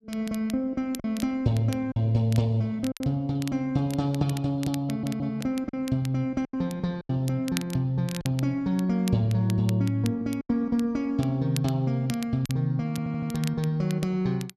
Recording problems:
crackle; vinyl, SNR 17 dB
lost packets; 4% of the sound replaced, filled with silence
audio stuttering; at 5 s and at 13 s

